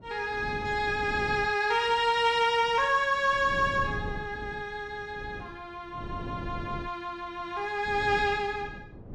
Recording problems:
wind on the microphone; below 280 Hz, SNR 14 dB

